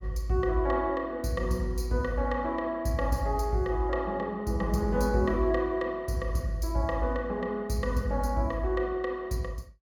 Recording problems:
none

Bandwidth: 17.5 kHz